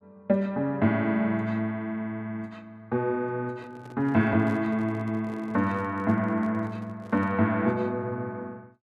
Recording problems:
handling noise; from 3.5 to 7.5 s; peak -11 dB vs average level

